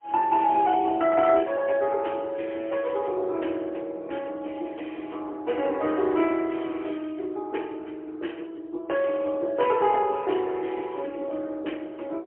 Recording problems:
telephone audio; 260 Hz to 3.2 kHz, AMR-NB, then MP3

